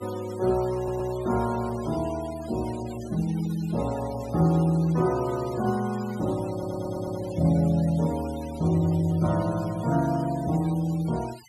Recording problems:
noise reduction artefacts; signal-to-artefact ratio 19 dB
audio stuttering; at 1 s and at 6.5 s

